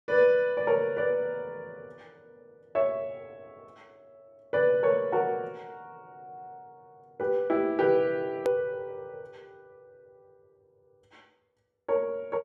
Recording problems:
edit click; at 8.5 s

